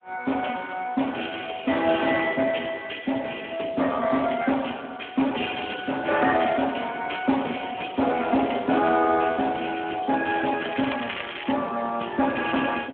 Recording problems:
phone line; 220 Hz to 3.3 kHz, Speex
crackling; at 11 s; loose cable, SNR 8 dB

